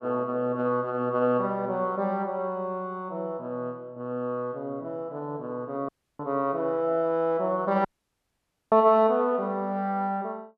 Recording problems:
audio cutting out; at 6 s and at 8 s for 1 s

